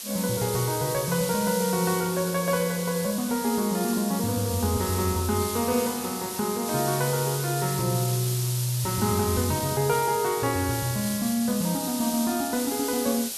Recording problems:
hiss; SNR 5 dB

